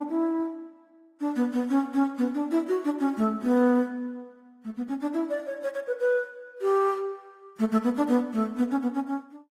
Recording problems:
lossy compression; AAC, then Opus, log-spectral distance 2 dB

